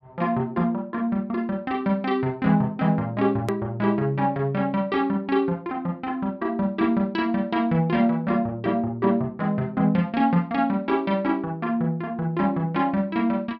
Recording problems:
treble cut off; nothing above 5.5 kHz
click at an edit; at 3.5 s

